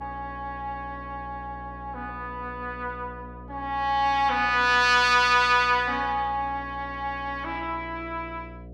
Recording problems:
hum; 60 Hz, harmonics up to 720 Hz, SNR 19 dB

